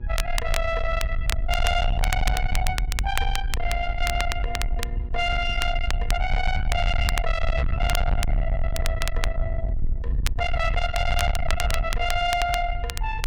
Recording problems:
distorted audio; soft clipping, signal-to-distortion ratio 7 dB
hum; 60 Hz, harmonics up to 960 Hz, SNR 20 dB
rumble; below 68 Hz, SNR 2 dB
crackle; vinyl, SNR 8 dB

